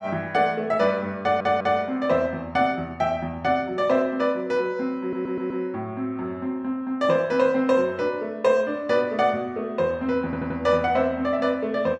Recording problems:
stutter; at 1 s, at 5 s and at 10 s

